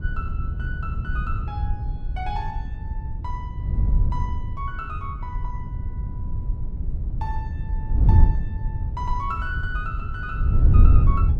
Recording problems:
wind noise; below 90 Hz, SNR -9 dB

